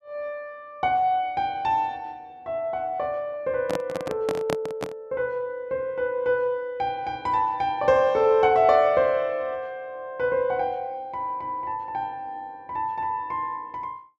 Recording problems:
handling noise; from 3.5 to 5 s; peak +1 dB vs average level

